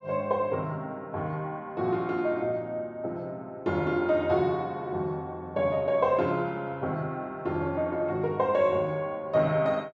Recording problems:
none

